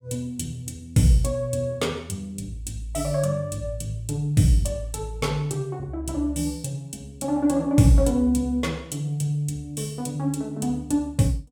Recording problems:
none

